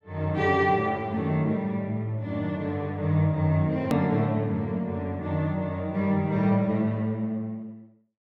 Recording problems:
hard cut with a click; at 4 s

